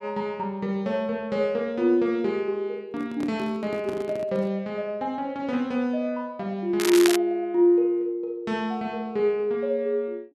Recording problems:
handling noise; from 3 to 4.5 s; peak -5 dB vs average level
crackling; at 7 s; loose cable, SNR 4 dB

